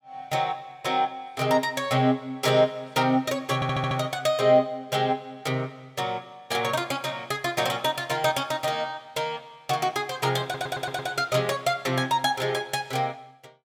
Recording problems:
stutter; at 3.5 s and at 10 s

